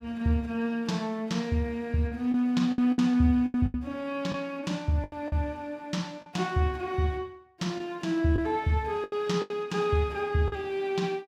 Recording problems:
packet loss; 7% of the sound replaced, filled with the last packet

